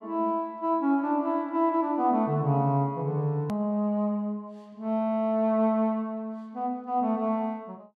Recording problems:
click at an edit; at 3.5 s

